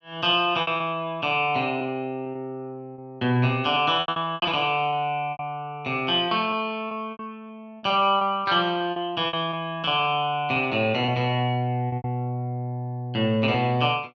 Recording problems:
lost packets; 9% of the sound replaced, filled with repeated pitch periods

